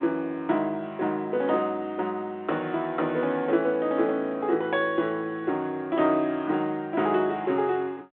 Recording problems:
phone line; 220 Hz to 3.9 kHz, G.726

